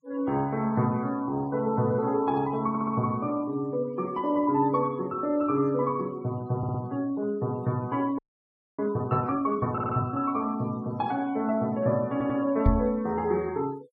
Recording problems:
denoising artefacts; signal-to-artefact ratio 25 dB
stutter; 4 times, first at 2.5 s
audio freezing; at 8 s for 0.5 s
microphone bump; at 13 s; peak +7 dB vs average level

